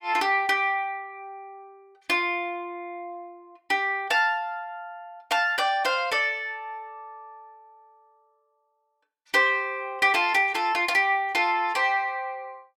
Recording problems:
none

